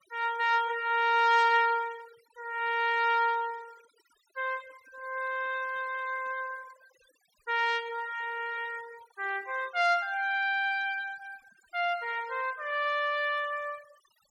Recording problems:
noise reduction artefacts; signal-to-artefact ratio 23 dB

